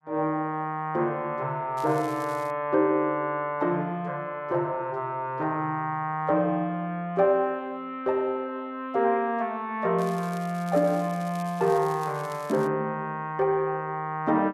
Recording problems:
crackle; at 2 s and from 10 to 13 s; loose cable, SNR 21 dB

